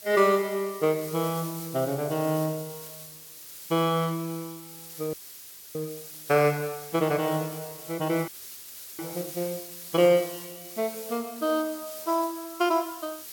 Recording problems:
hiss; SNR 12 dB
frozen audio; at 5 s for 0.5 s and at 8.5 s for 0.5 s

